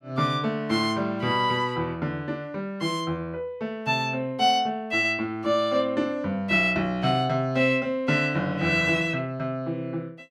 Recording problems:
none

